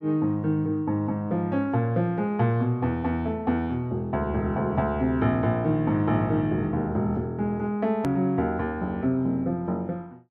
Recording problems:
click at an edit; at 8 s

